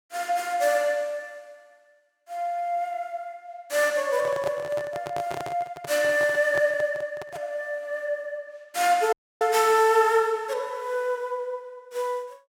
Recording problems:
microphone handling noise; from 4 to 7.5 s; peak -4 dB vs average level
audio cutting out; at 9 s

